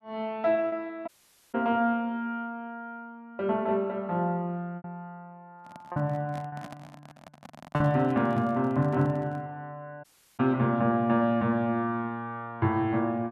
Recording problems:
lost packets; 1.9% of the sound replaced, filled with repeated pitch periods
audio cutting out; at 1 s and at 10 s
microphone handling noise; from 5.5 to 9.5 s; peak -10 dB vs average level

